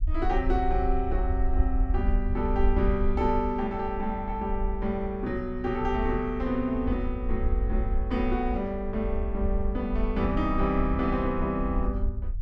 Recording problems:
rumble; below 60 Hz, SNR 3 dB

